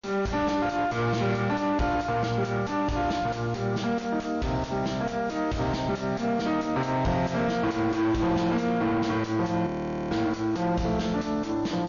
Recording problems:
treble missing; nothing above 6.9 kHz
lossy codec; MP3, log-spectral distance 4 dB
distorted audio; soft clipping, signal-to-distortion ratio 5 dB
audio freezing; at 9.5 s

